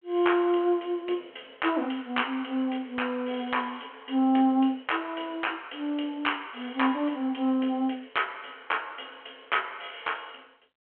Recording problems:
telephone audio; 280 Hz to 3.2 kHz, G.726

